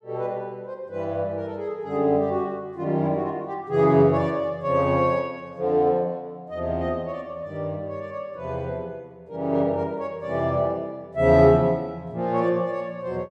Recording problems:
none

